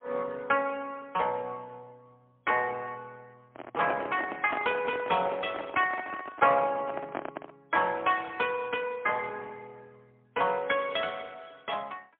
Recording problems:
telephone audio; 240 Hz to 3.3 kHz, AMR-NB, then MP3
microphone handling noise; from 3.5 to 7.5 s; peak -1 dB vs average level

